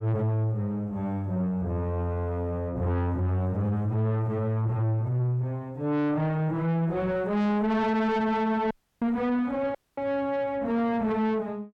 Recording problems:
distortion; soft clipping, signal-to-distortion ratio 7 dB
audio cutting out; at 8.5 s and at 10 s

